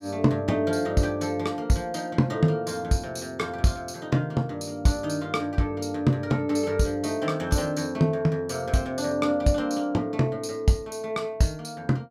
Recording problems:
none

